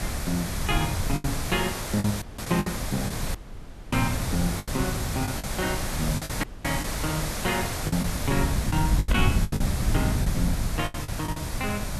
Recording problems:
background hiss; slope -3 dB per octave, SNR 3 dB
low-frequency rumble; below 130 Hz, SNR 1 dB
packet loss; 9% of the sound replaced, filled with the last packet
dropout; at 2 s, at 3.5 s for 0.5 s and at 6.5 s

